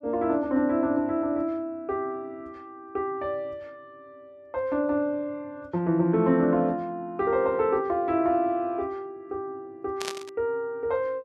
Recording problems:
burst of static; at 10 s; peak -1 dB vs average level

